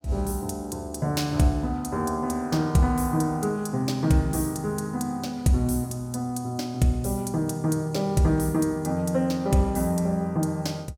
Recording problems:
none

